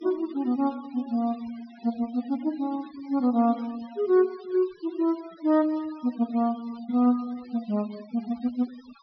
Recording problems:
treble cut off; nothing above 5.5 kHz
denoising artefacts; signal-to-artefact ratio 23 dB

